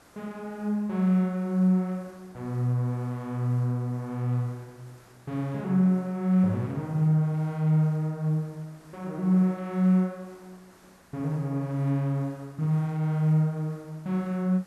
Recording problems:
hiss; SNR 28 dB

